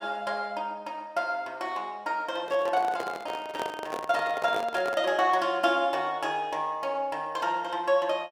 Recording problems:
handling noise; from 2.5 to 5 s; peak -1 dB vs average level

